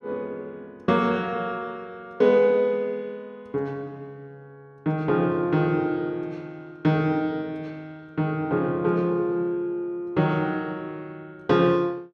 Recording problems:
none

